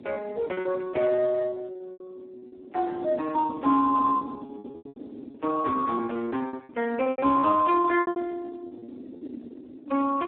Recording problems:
telephone audio; 220 Hz to 2.8 kHz, Speex
wind noise; below 350 Hz, SNR 17 dB
lost packets; 16% of the sound replaced, filled with repeated pitch periods

